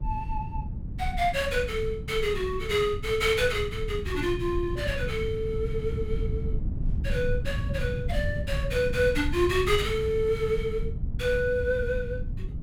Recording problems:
rumble; below 120 Hz, SNR 5 dB

